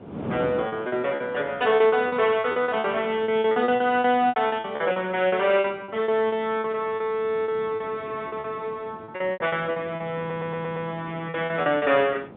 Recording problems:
phone line; 130 Hz to 3.7 kHz, G.711
wind on the microphone; below 550 Hz, SNR 18 dB
packet loss; 15% of the sound replaced, filled with repeated pitch periods
audio stuttering; at 10 s

